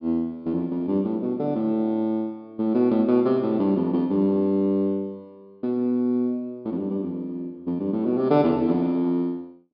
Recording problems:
treble missing; nothing above 5.3 kHz

